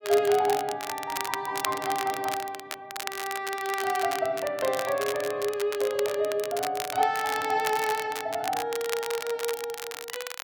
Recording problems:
crackling; vinyl, SNR 8 dB

